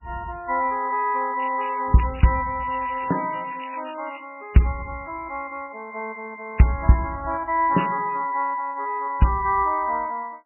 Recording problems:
lossy codec; MP3, log-spectral distance 6 dB, nothing above 2.9 kHz
crackle; from 1.5 to 4 s; loose cable, SNR 19 dB

